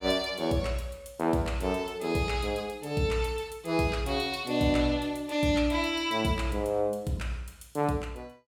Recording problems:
none

